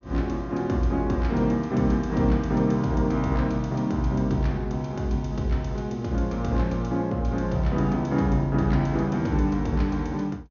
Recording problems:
treble missing; nothing above 6.8 kHz

